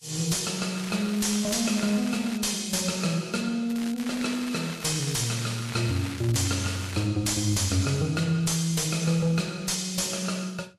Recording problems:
lossy codec; Vorbis, log-spectral distance 5 dB, nothing above 12.3 kHz
distorted audio; soft clipping, signal-to-distortion ratio 10 dB
crackle; from 1 to 2.5 s and from 3.5 to 7 s; loose cable, SNR 13 dB

